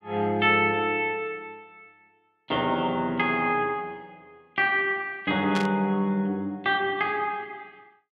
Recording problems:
burst of static; at 5.5 s; peak -4 dB vs average level

